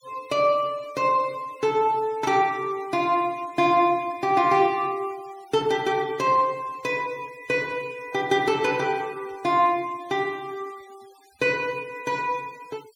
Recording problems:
noise reduction artefacts; signal-to-artefact ratio 25 dB

